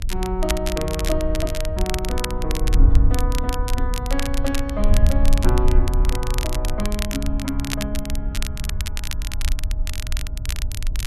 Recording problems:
hum; 60 Hz, harmonics up to 720 Hz, SNR 22 dB
wind noise; below 60 Hz, SNR -3 dB
crackling; vinyl, SNR 5 dB

